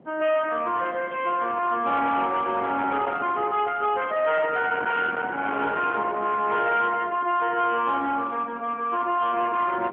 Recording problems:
phone line; 280 Hz to 3.5 kHz, AMR-NB
distorted audio; soft clipping, signal-to-distortion ratio 11 dB
wind on the microphone; below 1.4 kHz, SNR 16 dB

